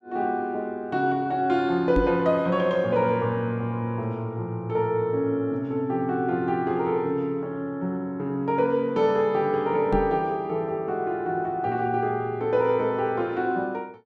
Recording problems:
knock on the microphone; at 2 s and at 10 s; peak +2 dB vs average level

